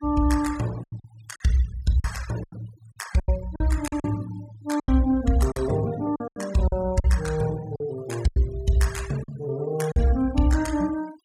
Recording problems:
noise reduction artefacts; signal-to-artefact ratio 17 dB
lost packets; 9% of the sound replaced, filled with silence

